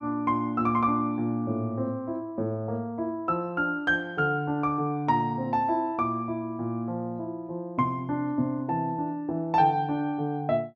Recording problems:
none

